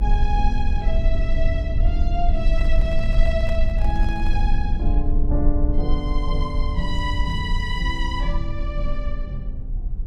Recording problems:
rumble; below 50 Hz, strongest tone 20 Hz, SNR -4 dB
handling noise; from 2.5 to 4.5 s; peak -4 dB vs average level

